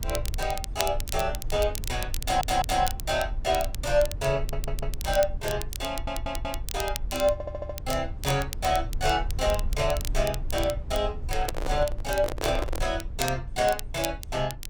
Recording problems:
rumble; below 64 Hz, SNR 8 dB
crackling; vinyl, SNR 10 dB
audio stuttering; 4 times, first at 2 s
handling noise; from 11 to 13 s; peak +1 dB vs average level

